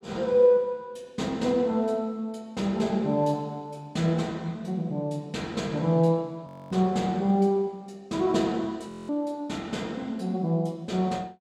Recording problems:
audio freezing; at 6.5 s and at 9 s

